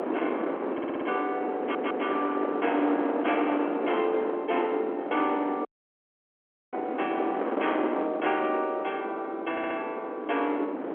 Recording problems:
telephone audio; 240 Hz to 3.5 kHz, G.711
distorted audio; hard clipping, signal-to-distortion ratio 14 dB
wind noise; below 740 Hz, SNR 4 dB
stutter; at 0.5 s, at 1.5 s and at 9.5 s
audio cutting out; at 5.5 s for 1 s

